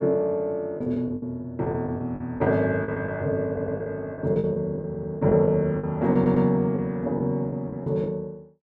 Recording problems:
lost packets; 10% of the sound replaced, filled with the last packet
stutter; at 3.5 s, at 5 s and at 6 s

